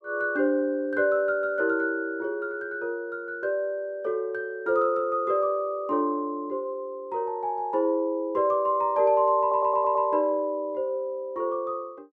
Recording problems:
stutter; at 9.5 s

